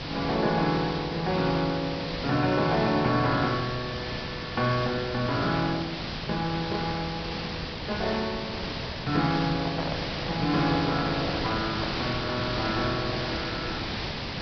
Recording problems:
low-pass filter; nothing above 5.5 kHz
hiss; slope -2 dB per octave, SNR 4 dB
handling noise; from 9.5 to 12 s; peak -3 dB vs average level

